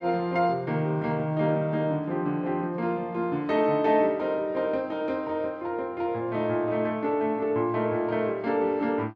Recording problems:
none

